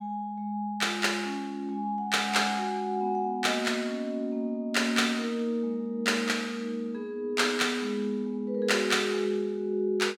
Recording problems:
none

